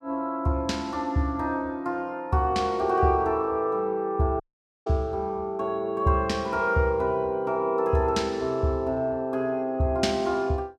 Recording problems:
dropout; at 4.5 s

